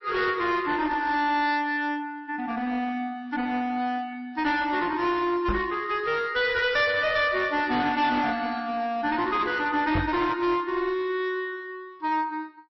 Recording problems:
codec artefacts; MP3, log-spectral distance 2 dB, nothing above 5.7 kHz
distorted audio; hard clipping, uneven, signal-to-distortion ratio 10 dB
knock on the microphone; at 5.5 s and at 10 s; peak +2 dB vs average level

